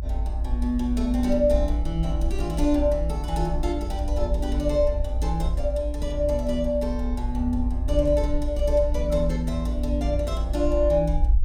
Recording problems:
rumble; below 56 Hz, strongest tone 56 Hz, SNR 3 dB

